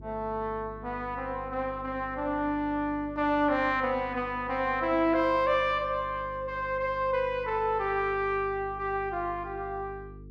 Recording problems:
hum; 50 Hz, harmonics up to 450 Hz, SNR 18 dB

